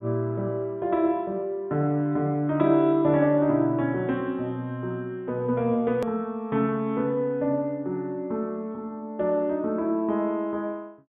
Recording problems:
low-pass filter; nothing above 4 kHz
edit click; at 6 s

